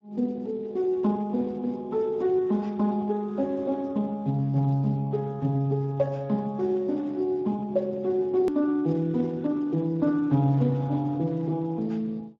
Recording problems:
lossy compression; Speex, log-spectral distance 2 dB, nothing above 13.1 kHz
hard cut with a click; at 8.5 s

